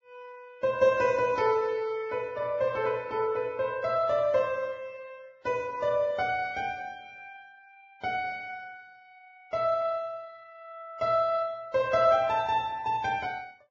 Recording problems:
lossy codec; Vorbis, log-spectral distance 2 dB, nothing above 6.3 kHz

